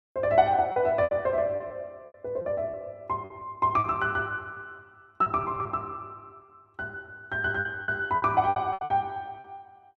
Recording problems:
lost packets; 12% of the sound replaced, filled with repeated pitch periods

